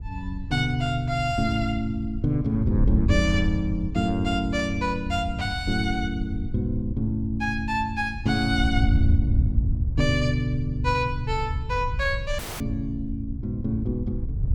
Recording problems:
wind on the microphone; below 98 Hz, SNR 3 dB
audio cutting out; at 12 s

